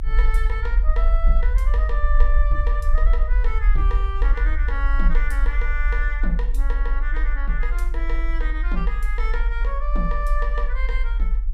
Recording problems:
low-frequency rumble; below 44 Hz, strongest tone 24 Hz, SNR -8 dB

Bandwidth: 15.5 kHz